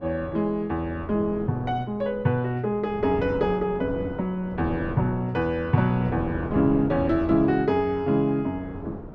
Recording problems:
wind on the microphone; below 450 Hz, SNR 11 dB

